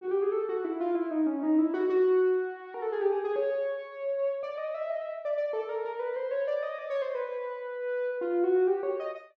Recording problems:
none

